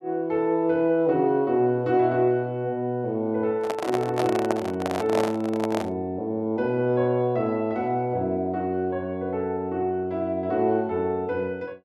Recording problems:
handling noise; from 3.5 to 6 s; peak +2 dB vs average level

